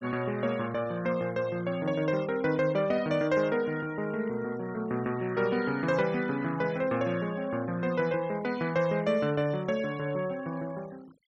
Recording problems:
denoising artefacts; signal-to-artefact ratio 22 dB

